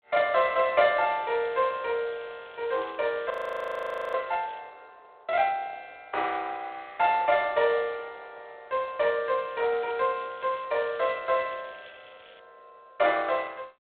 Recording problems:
telephone audio; 340 Hz to 3.5 kHz, G.726
crackle; from 1 to 4.5 s, from 9.5 to 11 s and from 11 to 12 s; loose cable, SNR 26 dB
frozen audio; at 3.5 s for 1 s

